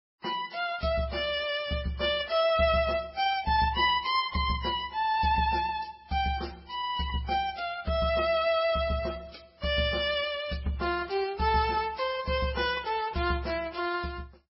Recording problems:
lossy compression; Vorbis, then MP3, log-spectral distance 4 dB, nothing above 5.5 kHz

